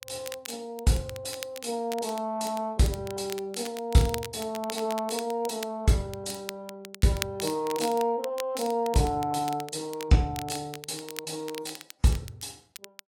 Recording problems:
codec artefacts; AAC, log-spectral distance 3 dB, nothing above 12 kHz
crackle; vinyl, SNR 13 dB

